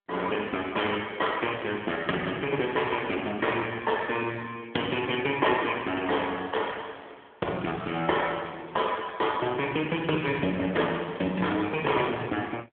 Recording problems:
telephone audio; 240 Hz to 3.4 kHz, AMR-NB

